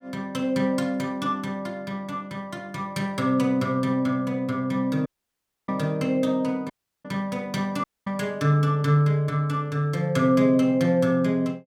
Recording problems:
audio cutting out; at 5 s for 0.5 s, at 6.5 s and at 8 s

